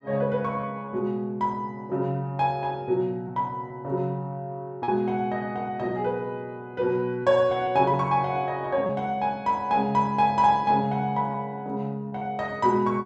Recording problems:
lost packets; 1.9% of the sound replaced, filled with repeated pitch periods

